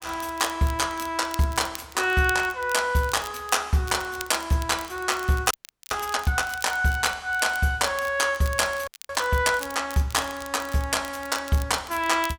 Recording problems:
crackling; vinyl, SNR 17 dB
audio freezing; at 5.5 s and at 9 s

